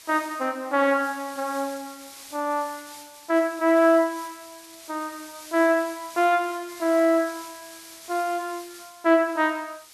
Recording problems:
background hiss; slope +2 dB per octave, SNR 19 dB

